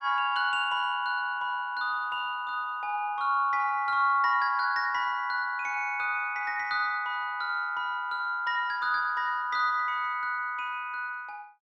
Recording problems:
none

